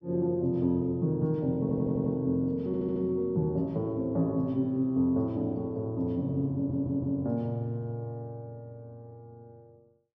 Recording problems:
audio stuttering; at 1.5 s, at 2.5 s and at 6.5 s

